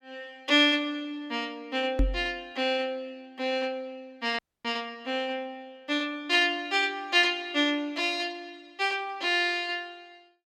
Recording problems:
microphone bump; at 2 s; peak +4 dB vs average level
audio cutting out; at 4.5 s

